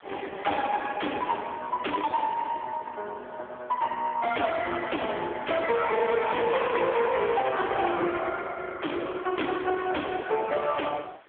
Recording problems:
phone line; 300 Hz to 3.3 kHz, AMR-NB
distortion; hard clipping, signal-to-distortion ratio 7 dB
background hiss; SNR 27 dB

